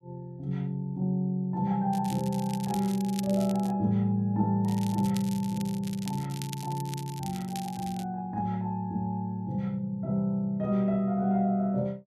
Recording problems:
crackle; from 2 to 3.5 s and from 4.5 to 8 s; loose cable, SNR 15 dB

